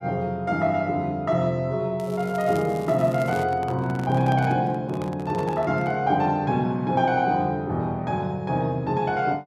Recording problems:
crackling; from 2 to 3.5 s; loose cable, SNR 23 dB
handling noise; from 3 to 6 s; peak -9 dB vs average level

